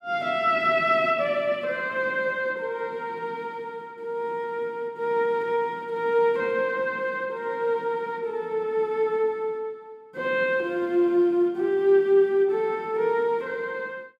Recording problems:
none

